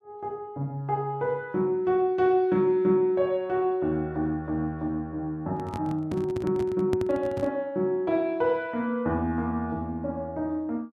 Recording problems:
handling noise; from 5.5 to 7.5 s; peak 0 dB vs average level

